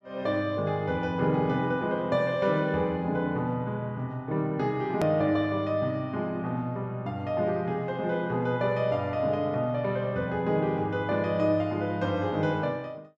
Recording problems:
click at an edit; at 5 s

